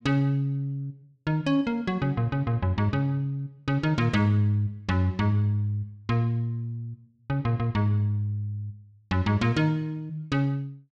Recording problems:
none

